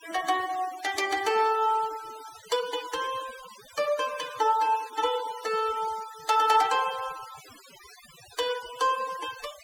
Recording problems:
noise reduction artefacts; signal-to-artefact ratio 16 dB

